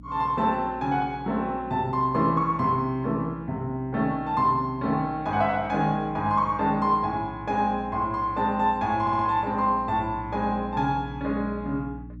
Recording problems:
hum; 60 Hz, harmonics up to 300 Hz, SNR 18 dB
audio stuttering; at 9 s

